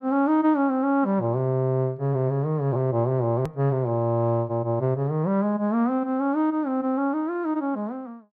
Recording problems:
hard cut with a click; at 3.5 s

